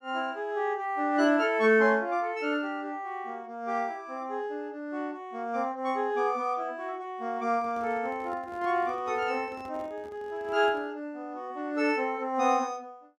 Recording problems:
handling noise; from 7.5 to 11 s; peak -13 dB vs average level

